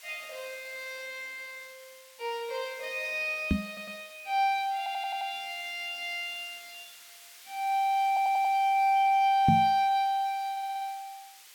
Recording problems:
background hiss; SNR 21 dB
microphone bump; at 3.5 s and at 9.5 s; peak +7 dB vs average level
audio stuttering; 4 times, first at 3.5 s

